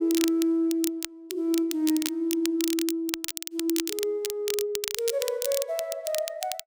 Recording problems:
crackle; vinyl, SNR 5 dB

